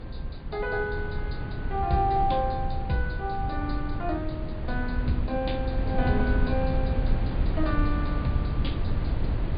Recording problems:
treble cut off; nothing above 4.8 kHz
hum; 50 Hz, harmonics up to 550 Hz, SNR 23 dB
wind on the microphone; below 120 Hz, SNR 0 dB

